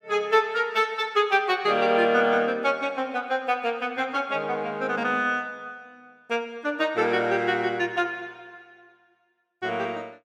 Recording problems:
none

